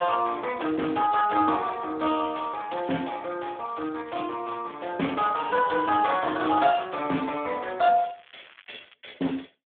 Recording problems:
phone line; 190 Hz to 2.9 kHz, Speex
crackling; from 2.5 to 4.5 s, from 4.5 to 7 s and from 8 to 9 s; loose cable, SNR 27 dB

